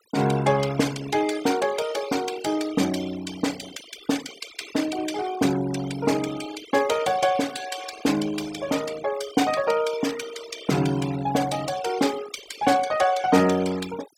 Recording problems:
noise reduction artefacts; signal-to-artefact ratio 14 dB

